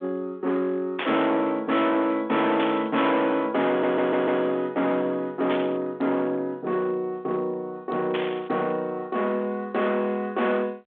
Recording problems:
phone line; 240 Hz to 3.7 kHz, G.726
distorted audio; hard clipping, signal-to-distortion ratio 7 dB
burst of static; 4 times, first at 1 s; peak -1 dB vs average level
audio stuttering; at 3.5 s

